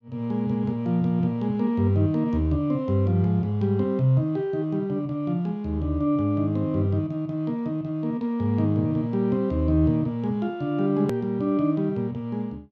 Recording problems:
click at an edit; at 11 s

